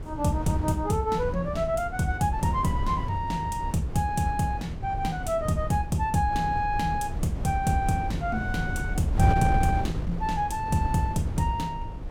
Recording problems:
wind on the microphone; below 150 Hz, SNR 6 dB

